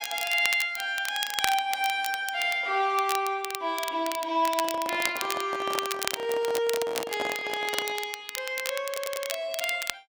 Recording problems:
crackle; vinyl, SNR 7 dB
microphone handling noise; from 4.5 to 8 s; peak -1 dB vs average level
stutter; at 9 s

